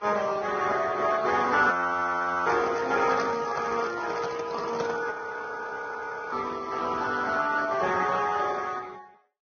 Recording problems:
lossy compression; Speex, then Vorbis, log-spectral distance 5 dB, nothing above 6.5 kHz
audio freezing; at 1.5 s for 1 s and at 5 s for 1 s
microphone handling noise; from 2.5 to 5 s; peak -3 dB vs average level

